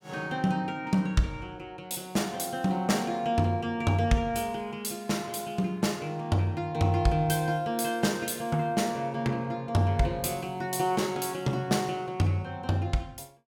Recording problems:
none

